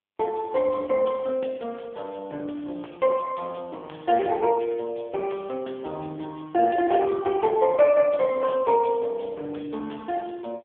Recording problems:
telephone audio; 300 Hz to 3.4 kHz, AMR-NB

